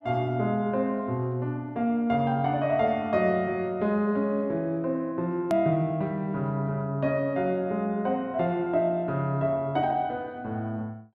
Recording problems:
hard cut with a click; at 5.5 s

